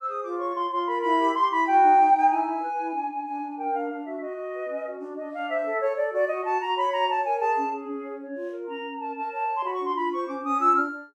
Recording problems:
none

